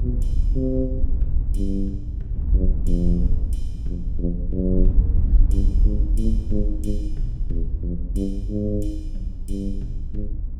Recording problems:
low-frequency rumble; below 60 Hz, SNR 12 dB
wind noise; below 60 Hz, SNR -3 dB

